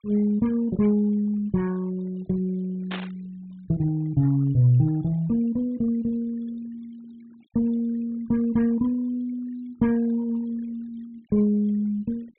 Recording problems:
treble cut off; nothing above 4 kHz
denoising artefacts; signal-to-artefact ratio 28 dB
static burst; at 3 s; peak -5 dB vs average level

